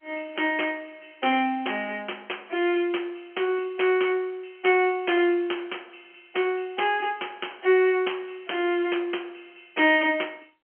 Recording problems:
telephone audio; 280 Hz to 3.2 kHz, G.711

